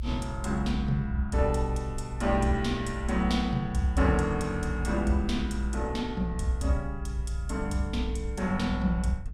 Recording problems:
low-frequency rumble; below 60 Hz, strongest tone 58 Hz, SNR 6 dB

